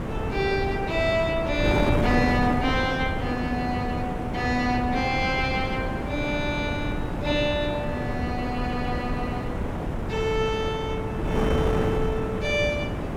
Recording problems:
wind noise; below 500 Hz, SNR 2 dB

